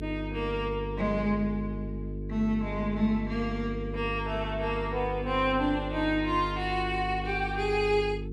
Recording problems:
electrical hum; 50 Hz, harmonics up to 450 Hz, SNR 7 dB

